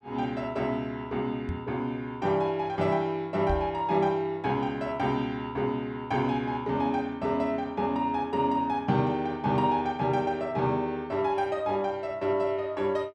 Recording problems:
knock on the microphone; at 1.5 s and at 3.5 s; peak 0 dB vs average level

